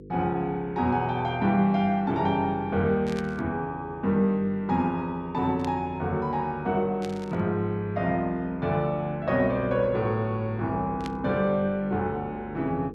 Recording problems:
electrical hum; 50 Hz, harmonics up to 500 Hz, SNR 18 dB
burst of static; 4 times, first at 3 s; peak -9 dB vs average level

